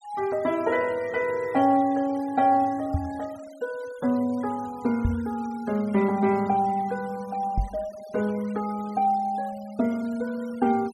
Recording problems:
noise reduction artefacts; signal-to-artefact ratio 22 dB
microphone thump; at 3 s, at 5 s and at 7.5 s; peak +4 dB vs average level

